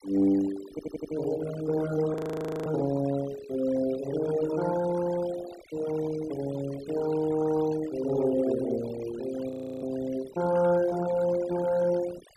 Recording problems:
denoising artefacts; signal-to-artefact ratio 16 dB
stutter; at 0.5 s
frozen audio; at 2 s for 0.5 s and at 9.5 s

